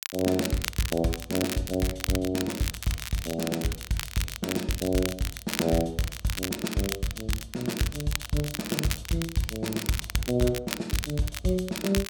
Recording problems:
crackling; vinyl, SNR 5 dB

